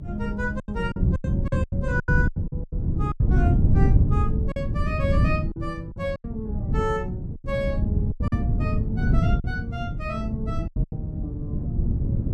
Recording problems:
hum; 50 Hz, harmonics up to 600 Hz, SNR 17 dB
wind on the microphone; below 150 Hz, SNR -6 dB
lost packets; 10% of the sound replaced, filled with silence

